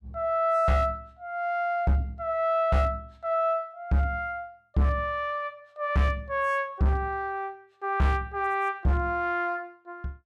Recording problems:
distortion; hard clipping, uneven, signal-to-distortion ratio 12 dB

